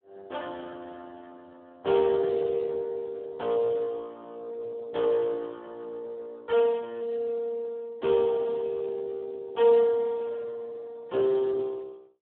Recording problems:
phone line; 220 Hz to 2.5 kHz, Speex

